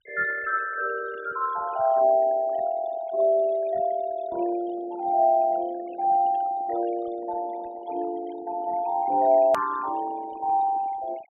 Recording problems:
treble cut off; nothing above 4 kHz
denoising artefacts; signal-to-artefact ratio 19 dB
hard cut with a click; at 9.5 s

